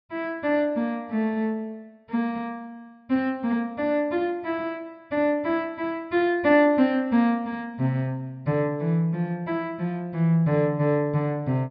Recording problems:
treble missing; nothing above 5.5 kHz

